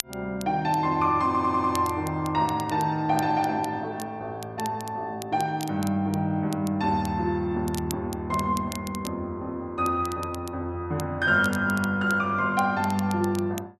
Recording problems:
crackle; vinyl, SNR 17 dB
stutter; at 1.5 s

